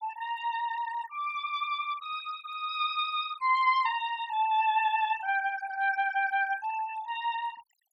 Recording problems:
noise reduction artefacts; signal-to-artefact ratio 16 dB

